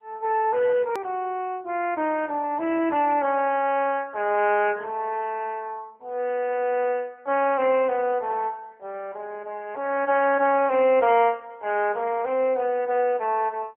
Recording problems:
phone line; 280 Hz to 3.1 kHz, AMR-NB
edit click; at 1 s

